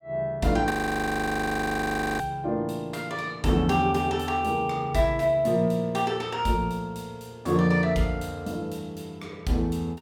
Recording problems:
frozen audio; at 0.5 s for 1.5 s

